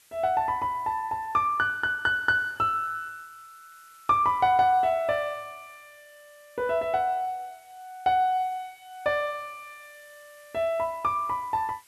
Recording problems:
hiss; slope +2 dB per octave, SNR 30 dB

